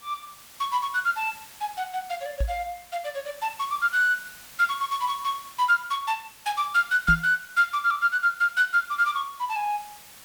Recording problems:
background hiss; slope +1 dB per octave, SNR 20 dB
microphone bump; at 2.5 s and at 7 s; peak +3 dB vs average level

